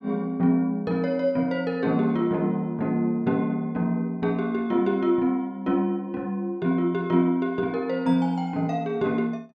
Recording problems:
none

